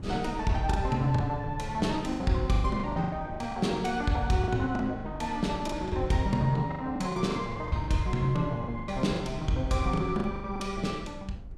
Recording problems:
wind on the microphone; below 92 Hz, SNR 14 dB
packet loss; 12% of the sound replaced, filled with the last packet

